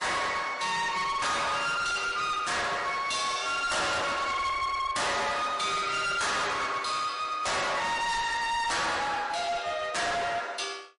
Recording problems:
codec artefacts; MP3, log-spectral distance 4 dB, nothing above 10.4 kHz
distorted audio; hard clipping, signal-to-distortion ratio 6 dB

